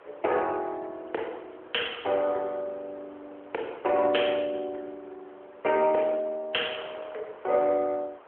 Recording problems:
phone line; 340 Hz to 3.4 kHz, AMR-NB
wind noise; below 1.3 kHz, SNR 22 dB

